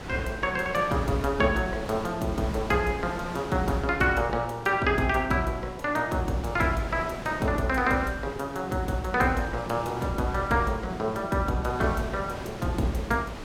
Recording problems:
wind noise; below 1.3 kHz, SNR 13 dB

